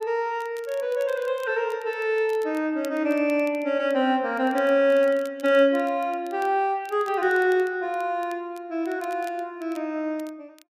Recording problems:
crackling; vinyl, SNR 27 dB

